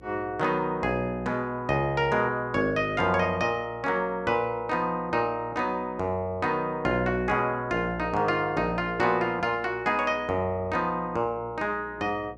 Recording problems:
hum; 60 Hz, harmonics up to 540 Hz, SNR 24 dB

